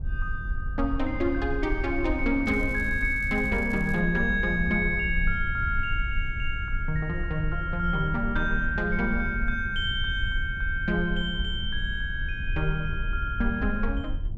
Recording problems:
rumble; below 64 Hz, SNR 6 dB
crackle; from 2.5 to 4 s; loose cable, SNR 27 dB

